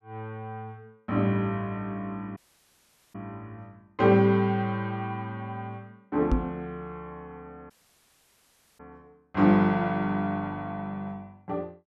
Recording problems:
dropout; at 2.5 s for 1 s and at 7.5 s for 1 s
microphone bump; at 6.5 s; peak +4 dB vs average level

